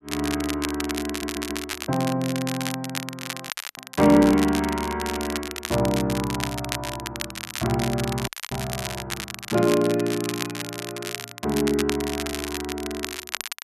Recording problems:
crackle; vinyl, SNR 7 dB
audio stuttering; at 1 s
audio freezing; at 3.5 s and at 8.5 s

